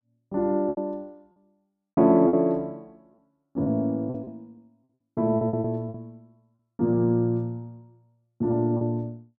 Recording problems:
lost packets; 9% of the sound replaced, filled with repeated pitch periods

